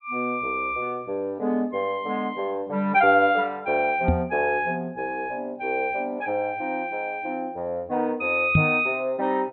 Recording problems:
low-pass filter; nothing above 4.2 kHz
microphone thump; at 4 s and at 8.5 s; peak +8 dB vs average level

